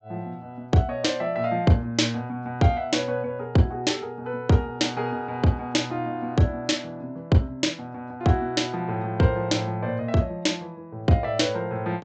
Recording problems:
treble missing; nothing above 8 kHz

